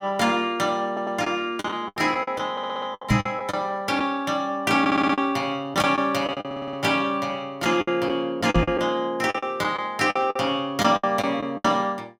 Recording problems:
lost packets; 11% of the sound replaced, filled with the last packet
stutter; 4 times, first at 1 s
microphone thump; at 3 s and at 8.5 s; peak +7 dB vs average level

